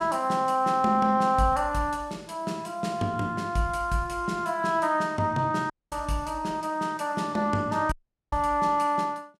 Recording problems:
audio cutting out; at 5.5 s and at 8 s

